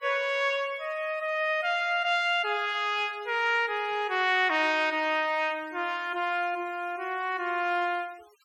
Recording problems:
noise reduction artefacts; signal-to-artefact ratio 27 dB

